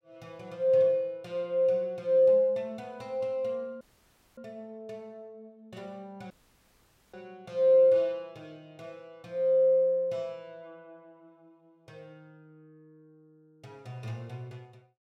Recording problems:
dropout; at 4 s for 0.5 s and at 6.5 s for 1 s

